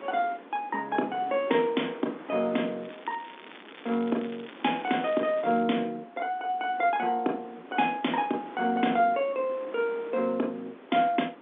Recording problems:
telephone audio; 220 Hz to 3.7 kHz, G.711
wind on the microphone; below 1.2 kHz, SNR 17 dB
crackle; from 3 to 5.5 s; loose cable, SNR 20 dB

